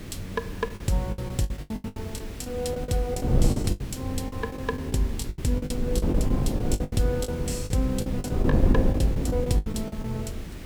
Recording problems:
hiss; slope -1 dB per octave, SNR 16 dB
wind on the microphone; below 230 Hz, SNR 0 dB
packet loss; 17% of the sound replaced, filled with the last packet

